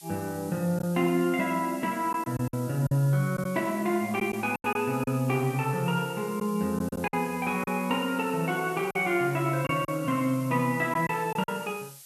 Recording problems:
background hiss; slope +5 dB per octave, SNR 18 dB
lost packets; 5% of the sound replaced, filled with silence

